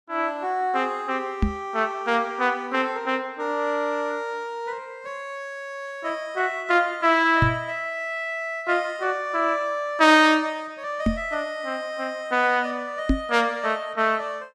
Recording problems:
microphone thump; 4 times, first at 1.5 s; peak +6 dB vs average level

